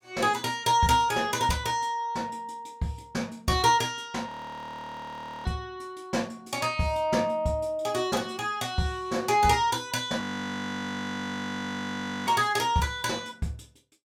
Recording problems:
frozen audio; at 4.5 s for 1 s and at 10 s for 2 s

